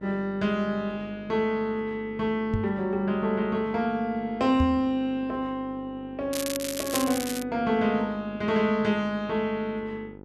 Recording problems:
electrical hum; 50 Hz, harmonics up to 1.4 kHz, SNR 18 dB
microphone bump; at 2.5 s and at 4.5 s; peak +3 dB vs average level
crackle; from 6.5 to 7.5 s; loose cable, SNR 6 dB

